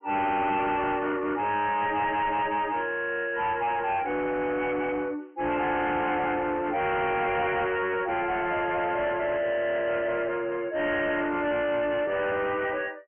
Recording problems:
low-pass filter; nothing above 3.1 kHz
distorted audio; soft clipping, signal-to-distortion ratio 8 dB

